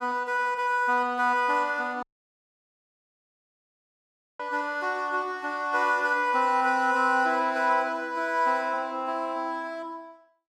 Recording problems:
audio cutting out; at 2 s for 2.5 s

